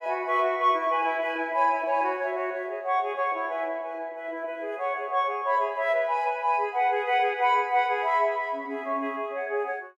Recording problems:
none

